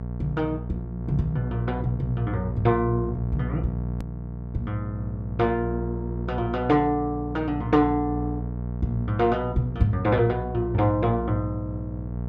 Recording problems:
electrical hum; 60 Hz, harmonics up to 900 Hz, SNR 6 dB
click at an edit; at 4 s

